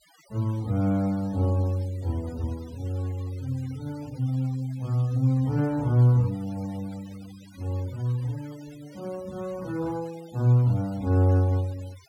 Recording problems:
denoising artefacts; signal-to-artefact ratio 25 dB

